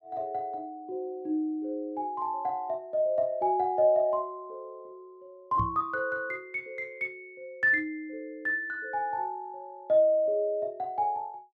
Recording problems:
microphone bump; at 5.5 s; peak -1 dB vs average level

